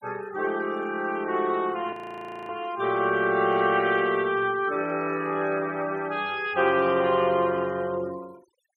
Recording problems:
denoising artefacts; signal-to-artefact ratio 23 dB
audio freezing; at 2 s for 0.5 s

